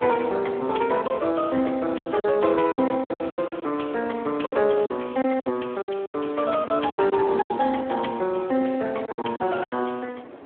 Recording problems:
telephone audio; 220 Hz to 3.3 kHz, Speex
wind on the microphone; below 820 Hz, SNR 19 dB
packet loss; 12% of the sound replaced, filled with silence

